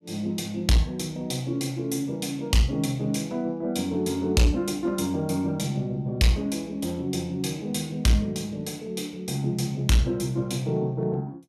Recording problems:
distorted audio; hard clipping, uneven, signal-to-distortion ratio 11 dB

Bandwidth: 14.5 kHz